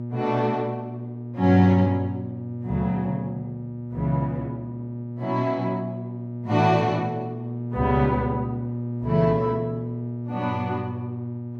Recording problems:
electrical hum; 60 Hz, harmonics up to 600 Hz, SNR 8 dB

